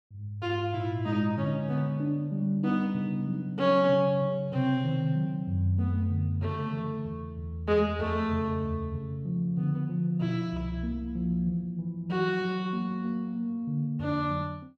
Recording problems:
none

